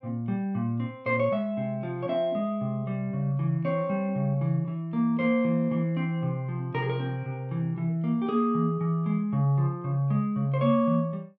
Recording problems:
none

